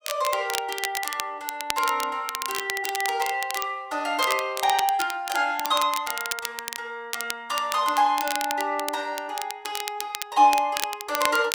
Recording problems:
crackling; vinyl, SNR 7 dB

